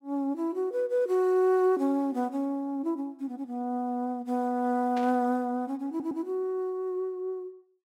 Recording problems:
static burst; at 5 s; peak -10 dB vs average level
stutter; at 6 s

